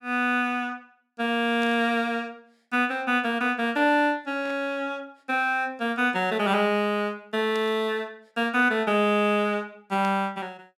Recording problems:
burst of static; 4 times, first at 1.5 s; peak -14 dB vs average level

